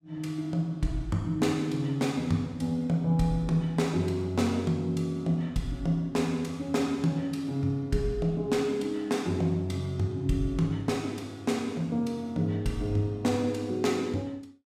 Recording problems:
none

